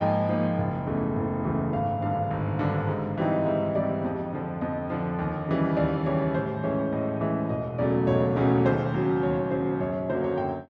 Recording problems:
none

